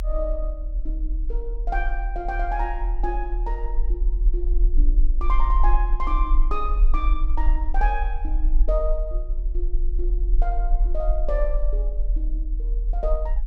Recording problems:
rumble; below 40 Hz, SNR -6 dB

